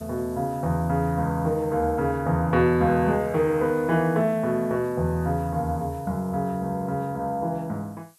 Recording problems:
background hiss; slope +1 dB per octave, SNR 27 dB

